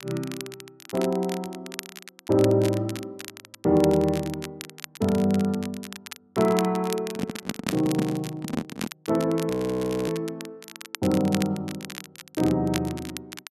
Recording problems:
crackle; vinyl, SNR 14 dB
handling noise; from 7 to 9 s; peak +3 dB vs average level
audio freezing; at 9.5 s for 0.5 s

